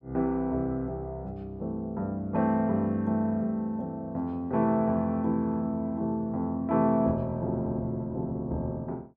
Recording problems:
none

